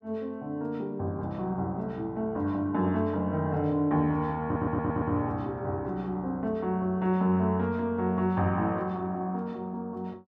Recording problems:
audio stuttering; at 4.5 s

